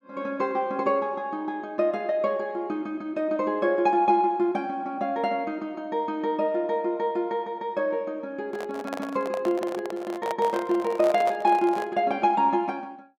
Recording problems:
microphone handling noise; from 8.5 to 12 s; peak -2 dB vs average level

